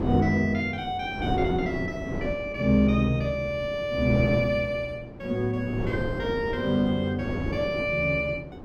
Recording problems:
wind noise; below 410 Hz, SNR 8 dB

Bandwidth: 16 kHz